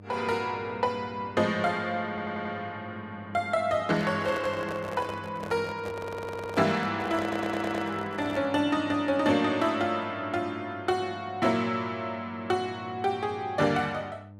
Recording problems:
hum; 50 Hz, harmonics up to 900 Hz, SNR 19 dB
audio stuttering; at 2 s, at 6 s and at 7 s
microphone handling noise; from 4 to 8.5 s; peak -5 dB vs average level

